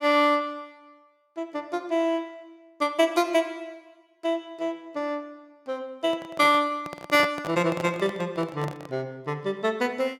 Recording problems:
microphone handling noise; from 6 to 9 s; peak -2 dB vs average level

